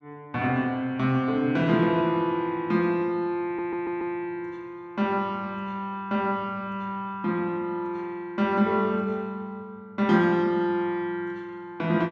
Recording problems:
stutter; at 3.5 s

